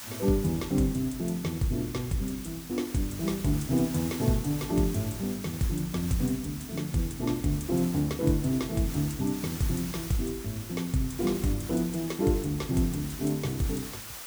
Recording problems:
background hiss; slope 0 dB per octave, SNR 11 dB

